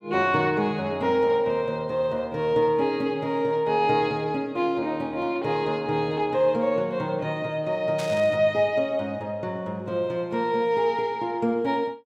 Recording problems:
static burst; at 8 s; peak -8 dB vs average level

